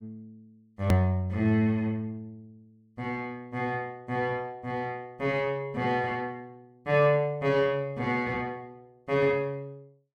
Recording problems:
hard cut with a click; at 1 s

